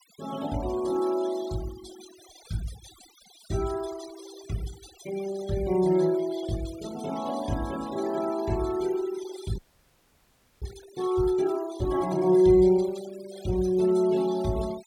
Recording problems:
denoising artefacts; signal-to-artefact ratio 18 dB
audio freezing; at 9.5 s for 1 s

